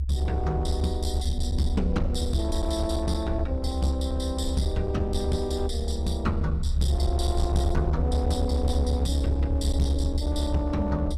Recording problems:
distortion; hard clipping, uneven, signal-to-distortion ratio 10 dB
low-frequency rumble; below 76 Hz, strongest tone 68 Hz, SNR -1 dB

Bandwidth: 13.5 kHz